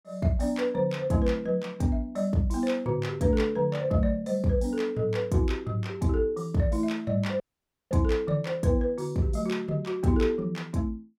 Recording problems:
dropout; at 7.5 s for 0.5 s

